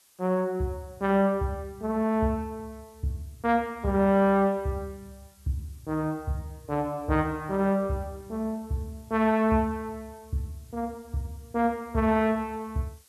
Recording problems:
background hiss; slope +1 dB per octave, SNR 29 dB

